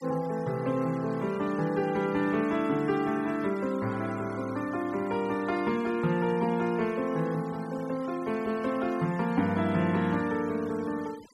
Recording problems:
denoising artefacts; signal-to-artefact ratio 20 dB

